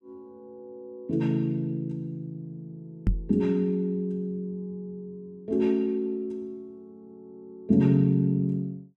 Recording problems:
microphone bump; at 3 s; peak +5 dB vs average level

